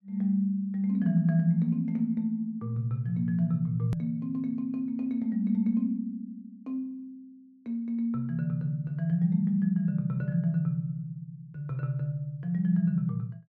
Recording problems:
edit click; at 4 s

